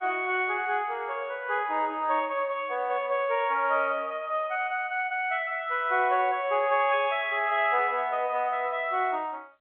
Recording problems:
telephone audio; 280 Hz to 3.7 kHz, G.711

